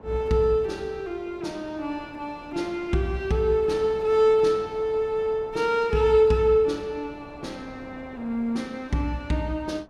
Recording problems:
wind noise; below 740 Hz, SNR 23 dB

